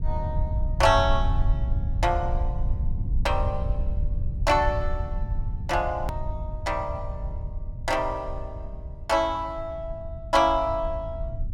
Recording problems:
low-frequency rumble; below 88 Hz, SNR 4 dB
click at an edit; at 6 s

